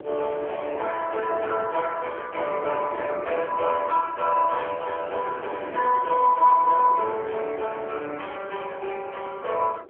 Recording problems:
telephone audio; 320 Hz to 3.4 kHz, AMR-NB
wind on the microphone; below 490 Hz, SNR 15 dB

